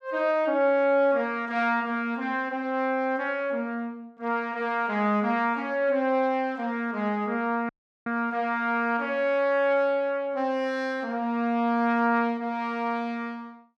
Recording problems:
audio cutting out; at 7.5 s

